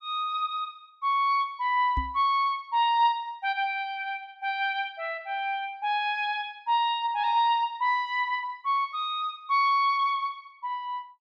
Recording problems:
microphone bump; at 2 s; peak -1 dB vs average level

